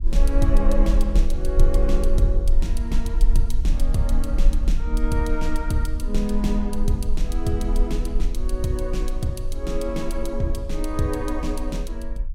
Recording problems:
rumble; below 40 Hz, strongest tone 22 Hz, SNR -2 dB

